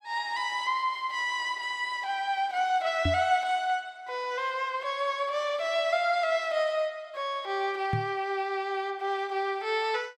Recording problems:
microphone thump; at 3 s and at 8 s; peak +4 dB vs average level

